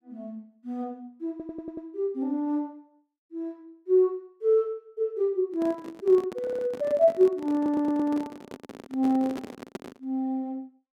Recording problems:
audio stuttering; at 1.5 s, at 6.5 s and at 7.5 s
microphone handling noise; from 5.5 to 10 s; peak -5 dB vs average level

